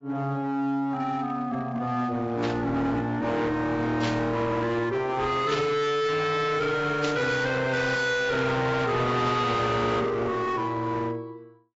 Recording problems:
lossy compression; AAC, log-spectral distance 2 dB, nothing above 7.6 kHz
distortion; hard clipping, signal-to-distortion ratio 7 dB
burst of static; 4 times, first at 2.5 s; peak -2 dB vs average level

